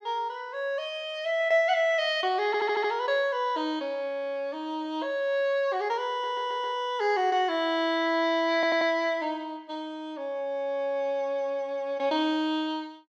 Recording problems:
audio stuttering; at 2.5 s, at 6 s and at 8.5 s

